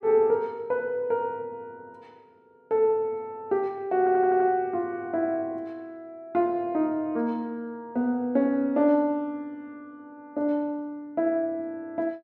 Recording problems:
audio stuttering; at 4 s

